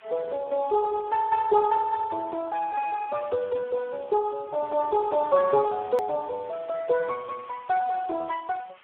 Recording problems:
phone line; 340 Hz to 2 kHz, Speex
hiss; SNR 27 dB
hard cut with a click; at 6 s

